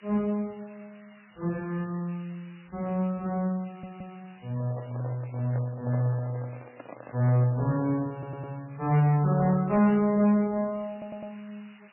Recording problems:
codec artefacts; MP3, log-spectral distance 12 dB, nothing above 2.4 kHz
distorted audio; hard clipping, signal-to-distortion ratio 11 dB
hiss; SNR 27 dB
stutter; at 3.5 s, at 8 s and at 11 s
handling noise; from 4.5 to 8 s; peak -8 dB vs average level

